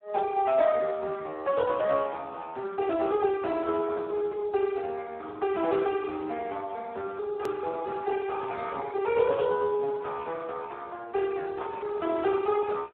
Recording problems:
phone line; 300 Hz to 3 kHz, Speex
hard cut with a click; at 7.5 s

